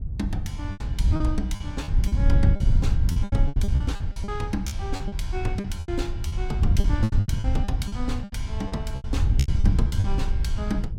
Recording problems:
wind on the microphone; below 96 Hz, SNR -7 dB
packet loss; 16% of the sound replaced, filled with repeated pitch periods

